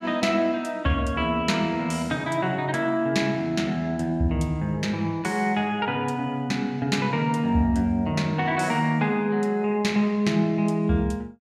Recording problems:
none

